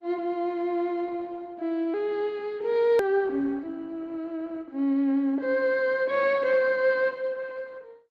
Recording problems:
lossy compression; Opus, log-spectral distance 2 dB, nothing above 14.6 kHz
hard cut with a click; at 3 s

